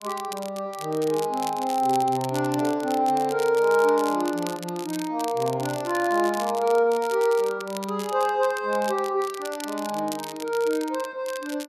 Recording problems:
crackling; vinyl, SNR 15 dB

